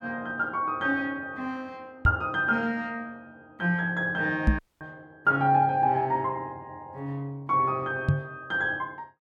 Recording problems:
microphone thump; at 2 s, at 4.5 s and at 8 s; peak +8 dB vs average level
audio cutting out; at 4.5 s

